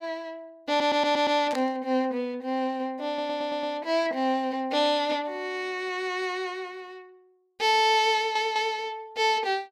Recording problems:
stutter; at 0.5 s, at 3 s and at 8 s
burst of static; at 1.5 s; peak -6 dB vs average level

